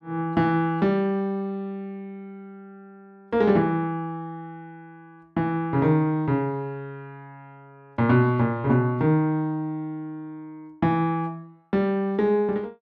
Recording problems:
none

